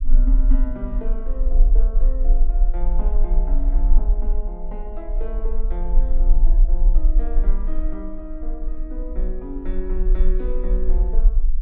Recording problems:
rumble; below 38 Hz, strongest tone 22 Hz, SNR -12 dB

